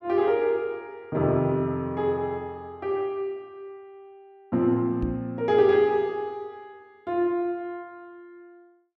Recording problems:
knock on the microphone; at 5 s; peak -1 dB vs average level

